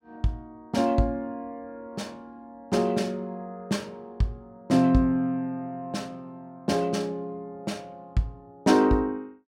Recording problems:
none

